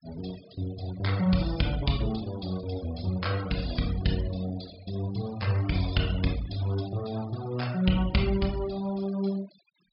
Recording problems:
low-pass filter; nothing above 5.5 kHz
noise reduction artefacts; signal-to-artefact ratio 16 dB

